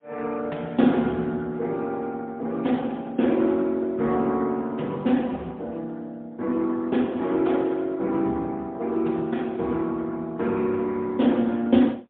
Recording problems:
telephone audio; 130 Hz to 3.6 kHz, AMR-NB, then MP3

